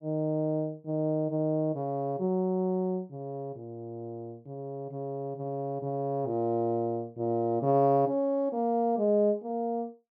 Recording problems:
none

